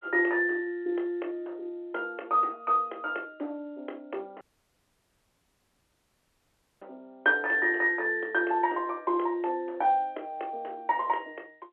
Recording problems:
phone line; 300 Hz to 3.6 kHz, G.711
dropout; at 4.5 s for 2.5 s

